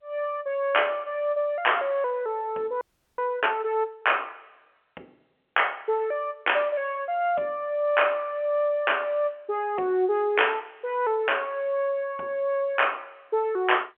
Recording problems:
phone line; 280 Hz to 3.2 kHz, G.711
frozen audio; at 3 s

